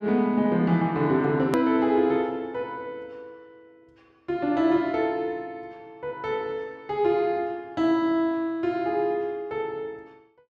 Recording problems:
hard cut with a click; at 1.5 s

